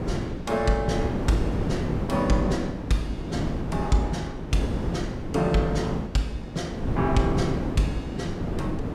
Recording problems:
wind noise; below 360 Hz, SNR 2 dB

